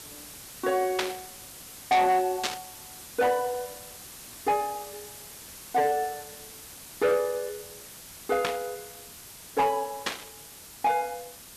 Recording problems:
distorted audio; hard clipping, signal-to-distortion ratio 8 dB
hiss; slope -1 dB per octave, SNR 14 dB
burst of static; 4 times, first at 1 s; peak +4 dB vs average level

